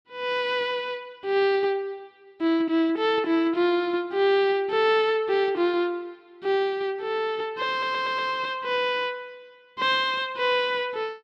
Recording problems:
audio stuttering; at 7.5 s

